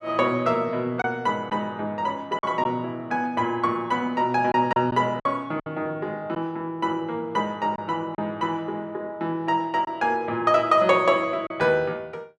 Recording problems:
lost packets; 3% of the sound replaced, filled with silence

